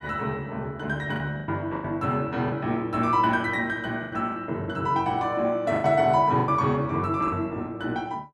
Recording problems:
packet loss; 8% of the sound replaced, filled with the last packet

